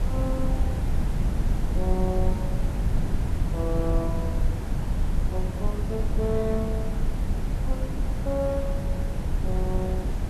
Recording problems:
hiss; slope -6 dB per octave, SNR 6 dB
rumble; below 90 Hz, SNR -4 dB

